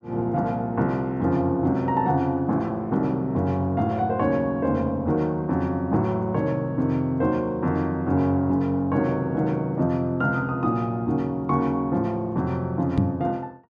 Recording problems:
microphone thump; at 13 s; peak +6 dB vs average level

